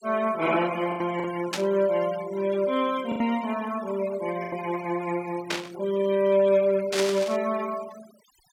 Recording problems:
denoising artefacts; signal-to-artefact ratio 18 dB
packet loss; 3% of the sound replaced, filled with the last packet
static burst; at 1.5 s, at 5.5 s and at 7 s; peak +2 dB vs average level

